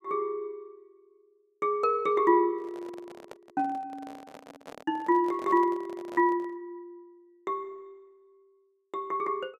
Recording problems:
microphone handling noise; from 2.5 to 6.5 s; peak -11 dB vs average level

